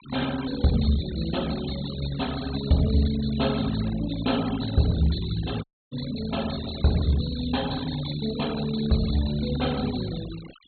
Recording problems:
low-pass filter; nothing above 4.3 kHz
denoising artefacts; signal-to-artefact ratio 14 dB
dropout; at 5.5 s

